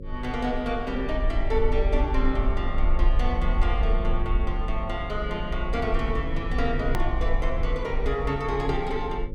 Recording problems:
mains hum; 50 Hz, harmonics up to 550 Hz, SNR 9 dB
low-frequency rumble; below 50 Hz, SNR 1 dB
edit click; at 7 s

